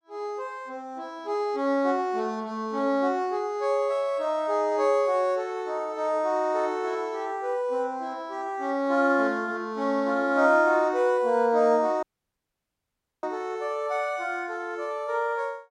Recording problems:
dropout; at 12 s for 1 s

